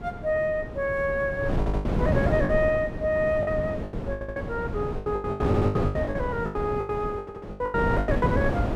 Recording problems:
wind on the microphone; below 410 Hz, SNR 2 dB
packet loss; 15% of the sound replaced, filled with the last packet
audio stuttering; 4 times, first at 1.5 s

